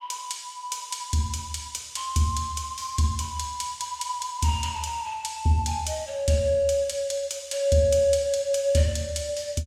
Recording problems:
none

